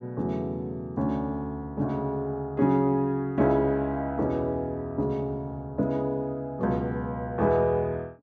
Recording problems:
none

